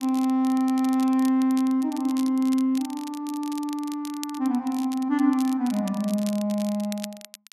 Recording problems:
crackle; vinyl, SNR 18 dB

